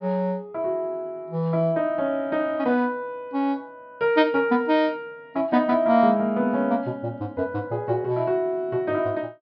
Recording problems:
treble cut off; nothing above 5.5 kHz

